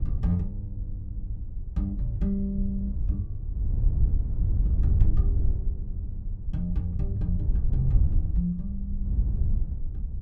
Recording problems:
wind noise; below 80 Hz, SNR -2 dB

